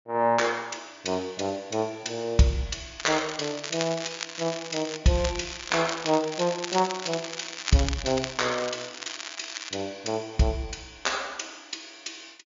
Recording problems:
treble cut off; nothing above 7.2 kHz
crackling; from 3 to 5 s and from 5 to 9.5 s; loose cable, SNR 7 dB

